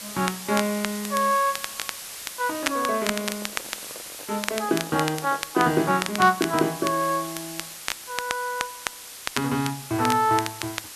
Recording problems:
hiss; slope +1 dB per octave, SNR 11 dB
crackling; vinyl, SNR 9 dB
handling noise; from 2.5 to 6 s; peak -10 dB vs average level

